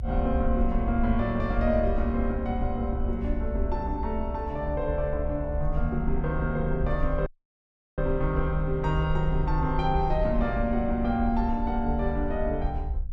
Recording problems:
rumble; below 64 Hz, SNR 4 dB
dropout; at 7.5 s for 0.5 s

